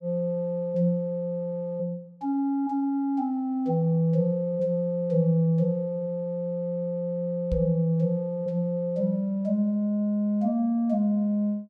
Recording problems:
knock on the microphone; at 7.5 s; peak 0 dB vs average level

